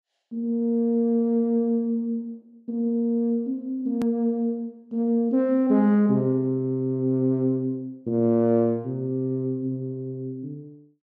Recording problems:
hard cut with a click; at 4 s

